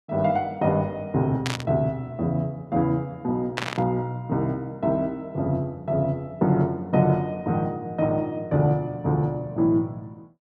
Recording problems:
burst of static; at 1.5 s and at 3.5 s; peak +1 dB vs average level

